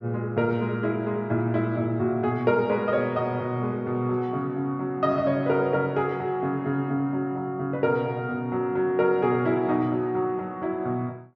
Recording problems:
treble missing; nothing above 7.2 kHz

